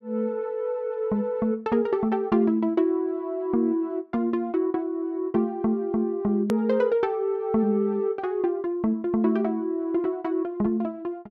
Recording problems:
click at an edit; at 6.5 s

